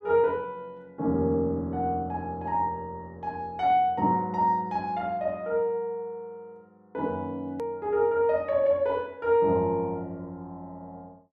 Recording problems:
hard cut with a click; at 7.5 s

